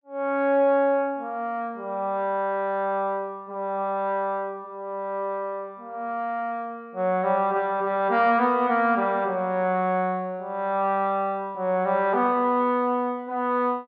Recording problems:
treble missing; nothing above 5.5 kHz

